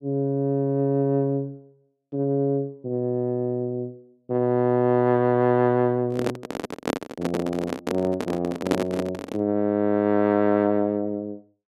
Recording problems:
microphone handling noise; from 6 to 9.5 s; peak +4 dB vs average level

